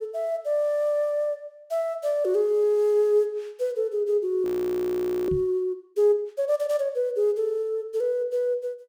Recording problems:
frozen audio; at 4.5 s for 1 s
knock on the microphone; at 5.5 s; peak -4 dB vs average level

